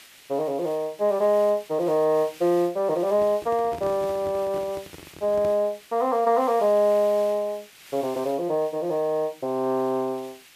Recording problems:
background hiss; SNR 22 dB
handling noise; from 3 to 5.5 s; peak -9 dB vs average level

